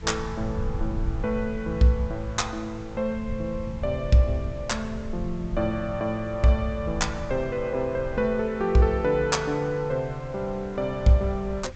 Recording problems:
treble cut off; nothing above 8 kHz
background hiss; SNR 26 dB
rumble; below 98 Hz, SNR 11 dB

